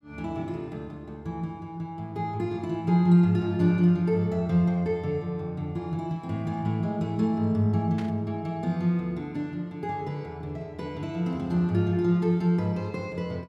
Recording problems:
static burst; at 8 s; peak -11 dB vs average level

